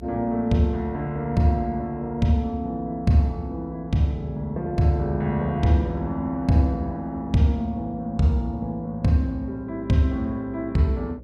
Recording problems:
electrical hum; 60 Hz, harmonics up to 600 Hz, SNR 19 dB

